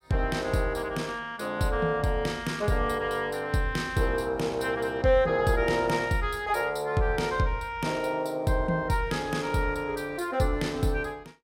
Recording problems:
none

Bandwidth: 16 kHz